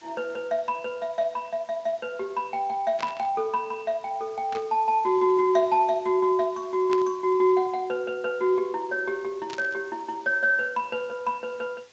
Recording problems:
codec artefacts; Speex, log-spectral distance 3 dB
hiss; slope -1 dB per octave, SNR 28 dB
burst of static; 4 times, first at 3 s; peak -6 dB vs average level

